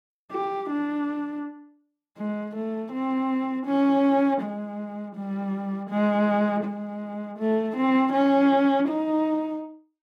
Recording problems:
none

